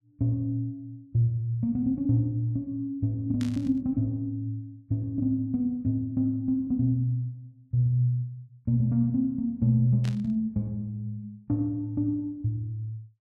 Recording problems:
static burst; at 3.5 s and at 10 s; peak -10 dB vs average level

